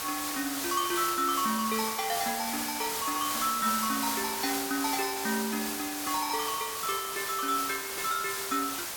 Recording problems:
background hiss; slope 0 dB per octave, SNR 1 dB

